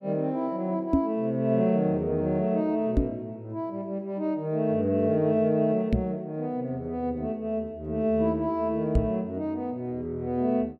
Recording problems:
microphone thump; 4 times, first at 1 s; peak +8 dB vs average level

